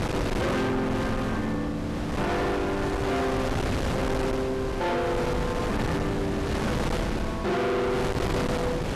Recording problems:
distortion; hard clipping, signal-to-distortion ratio 6 dB
wind on the microphone; below 790 Hz, SNR 2 dB

